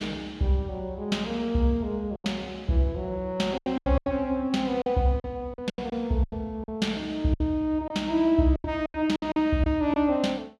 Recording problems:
lost packets; 10% of the sound replaced, filled with silence

